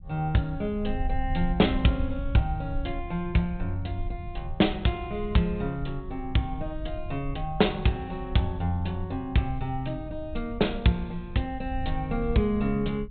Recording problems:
treble missing; nothing above 4 kHz
rumble; below 68 Hz, SNR 9 dB

